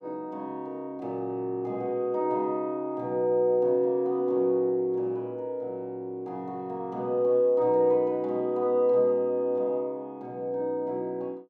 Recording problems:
none

